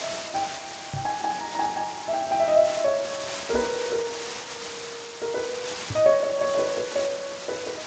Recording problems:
codec artefacts; Speex, log-spectral distance 17 dB
background hiss; slope -1 dB per octave, SNR 9 dB
microphone bump; at 1 s, at 3.5 s and at 6 s; peak -3 dB vs average level

